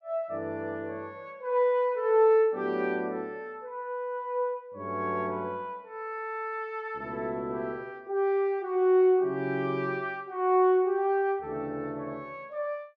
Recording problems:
none

